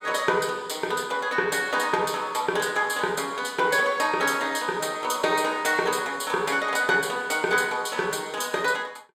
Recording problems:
none

